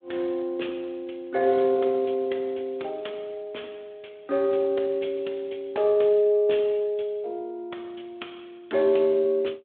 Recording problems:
telephone audio; 280 Hz to 3.6 kHz, Speex

